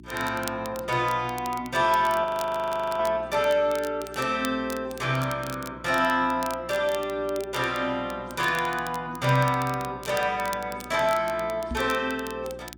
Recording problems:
hum; 60 Hz, harmonics up to 360 Hz, SNR 22 dB
crackle; vinyl, SNR 17 dB
frozen audio; at 2 s for 1 s
microphone thump; at 12 s; peak -3 dB vs average level

